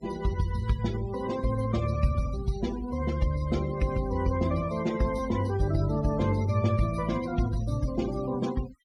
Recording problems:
denoising artefacts; signal-to-artefact ratio 16 dB

